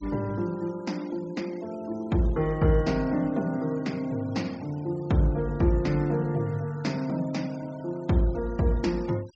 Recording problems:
treble cut off; nothing above 8 kHz
noise reduction artefacts; signal-to-artefact ratio 24 dB

